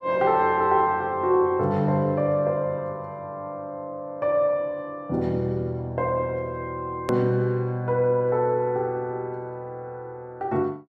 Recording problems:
edit click; at 7 s

